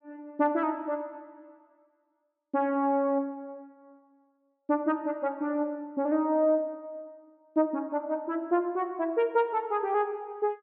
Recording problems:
treble cut off; nothing above 5.5 kHz

